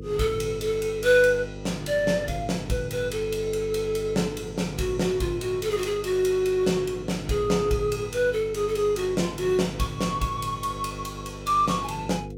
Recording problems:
hum; 50 Hz, harmonics up to 500 Hz, SNR 13 dB

